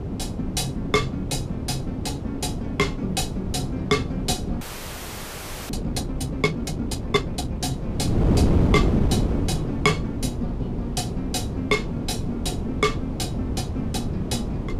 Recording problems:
wind noise; below 290 Hz, SNR 0 dB
audio freezing; at 4.5 s for 1 s

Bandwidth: 14.5 kHz